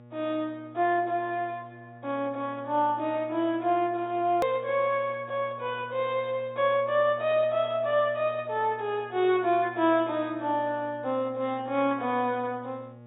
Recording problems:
treble cut off; nothing above 4 kHz
electrical hum; 60 Hz, harmonics up to 1.4 kHz, SNR 21 dB
click at an edit; at 4.5 s

